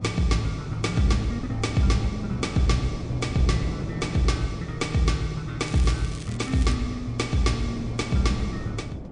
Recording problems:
lossy compression; MP3, log-spectral distance 2 dB, nothing above 9 kHz
wind noise; below 320 Hz, SNR 10 dB
crackling; from 5.5 to 6.5 s; loose cable, SNR 17 dB

